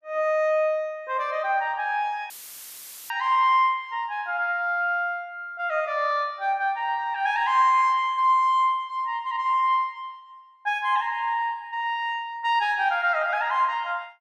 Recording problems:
audio cutting out; at 2.5 s for 1 s; filled with static

